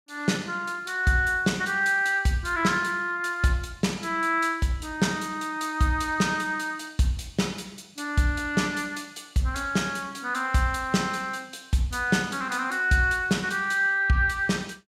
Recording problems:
none

